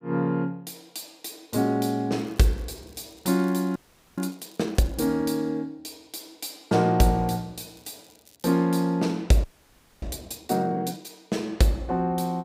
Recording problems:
crackling; from 2 to 5 s and at 7.5 s; loose cable, SNR 30 dB
audio freezing; at 4 s and at 9.5 s for 0.5 s

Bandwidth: 15.5 kHz